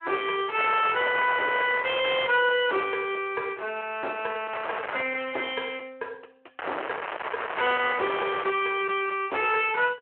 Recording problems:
telephone audio; 320 Hz to 3.4 kHz, Speex
distortion; soft clipping, signal-to-distortion ratio 8 dB
crackle; from 0.5 to 2.5 s, at 4.5 s and from 6.5 to 8.5 s; loose cable, SNR 8 dB

